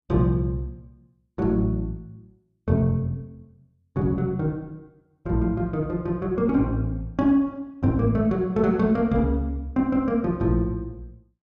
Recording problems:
none

